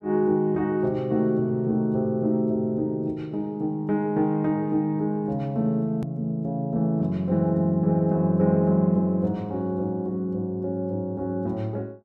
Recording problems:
hard cut with a click; at 6 s

